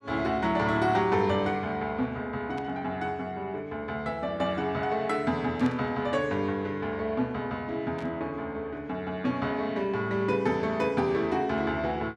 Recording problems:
burst of static; at 2.5 s, at 5.5 s and at 8 s; peak -13 dB vs average level

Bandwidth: 12.5 kHz